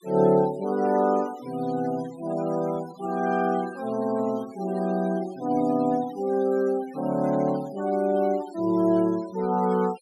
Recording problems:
denoising artefacts; signal-to-artefact ratio 22 dB

